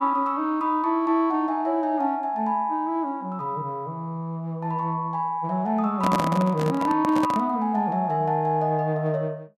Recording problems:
microphone handling noise; from 6 to 7.5 s; peak +3 dB vs average level

